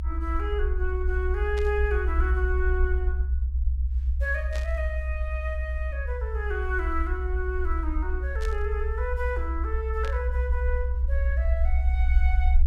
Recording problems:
low-frequency rumble; below 66 Hz, strongest tone 64 Hz, SNR -5 dB
burst of static; 4 times, first at 1.5 s; peak -5 dB vs average level

